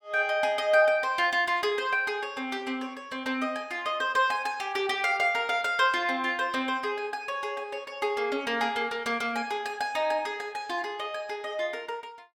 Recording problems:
none

